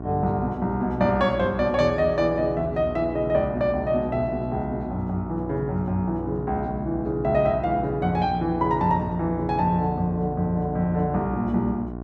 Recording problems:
hum; 60 Hz, harmonics up to 1.1 kHz, SNR 10 dB

